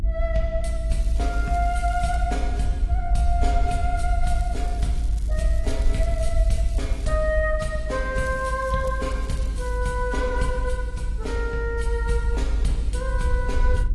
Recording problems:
codec artefacts; AAC, log-spectral distance 2 dB
hum; 60 Hz, harmonics up to 360 Hz, SNR 17 dB
rumble; below 54 Hz, strongest tone 52 Hz, SNR -2 dB
crackle; from 1 to 2 s, from 4.5 to 7 s and from 8 to 10 s; loose cable, SNR 20 dB

